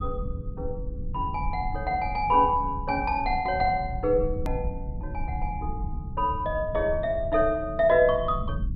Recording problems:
treble cut off; nothing above 5.5 kHz
low-frequency rumble; below 100 Hz, SNR 10 dB
click at an edit; at 4.5 s

